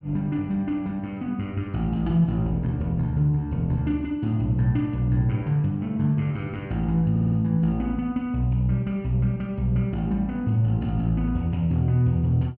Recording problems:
audio stuttering; at 7 s

